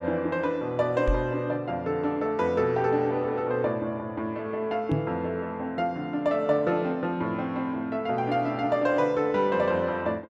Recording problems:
knock on the microphone; at 1 s and at 5 s; peak +4 dB vs average level

